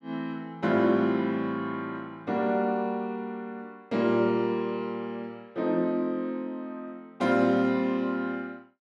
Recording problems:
none

